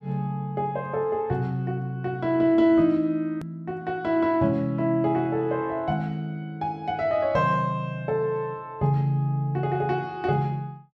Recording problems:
edit click; at 3.5 s

